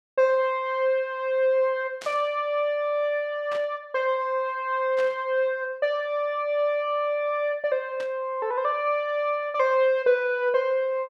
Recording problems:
static burst; 4 times, first at 2 s; peak -10 dB vs average level

